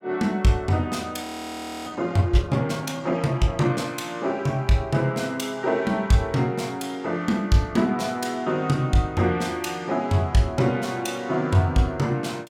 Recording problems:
audio freezing; at 1 s for 0.5 s

